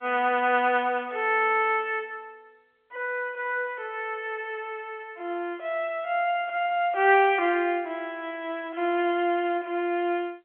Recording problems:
phone line; 280 Hz to 3.4 kHz, G.711

